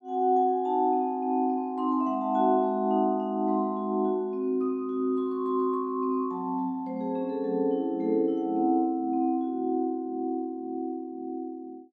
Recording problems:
none

